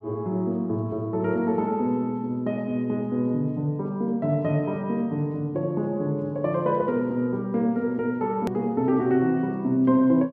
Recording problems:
click at an edit; at 8.5 s

